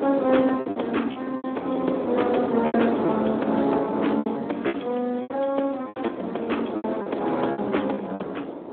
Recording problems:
phone line; 220 Hz to 3.6 kHz, Speex
wind noise; below 670 Hz, SNR 7 dB
packet loss; 12% of the sound replaced, filled with repeated pitch periods

